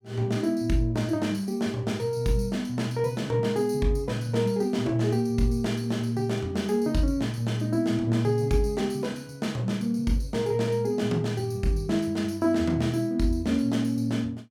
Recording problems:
none

